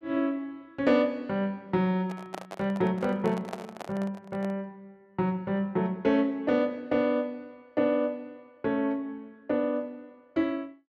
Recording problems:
handling noise; from 2 to 4.5 s; peak -4 dB vs average level

